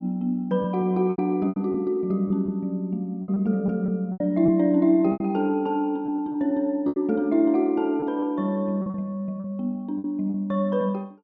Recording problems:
packet loss; 9% of the sound replaced, filled with repeated pitch periods

